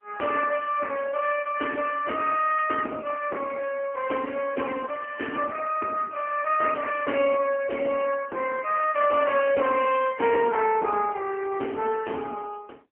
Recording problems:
phone line; 280 Hz to 3.1 kHz, AMR-NB, then MP3

